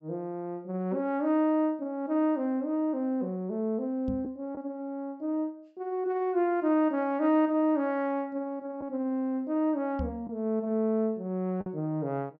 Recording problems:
low-pass filter; nothing above 7.9 kHz
packet loss; 0.9% of the sound replaced, filled with the last packet
microphone bump; at 4 s and at 10 s; peak -2 dB vs average level

